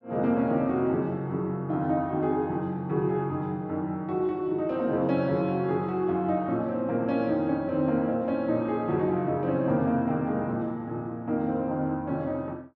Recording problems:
none

